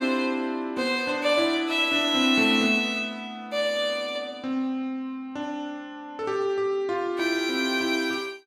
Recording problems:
none

